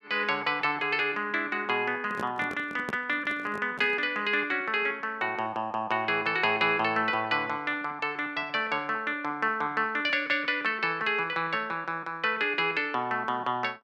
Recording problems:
handling noise; from 2 to 4 s; peak -4 dB vs average level

